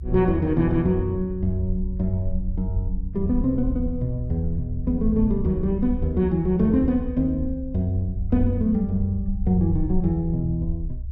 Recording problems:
rumble; below 66 Hz, SNR 8 dB

